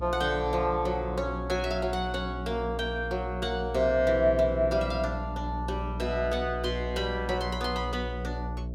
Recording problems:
electrical hum; 60 Hz, harmonics up to 660 Hz, SNR 7 dB

